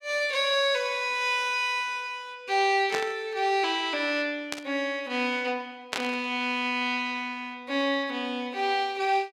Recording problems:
burst of static; at 3 s, at 4.5 s and at 6 s; peak +1 dB vs average level

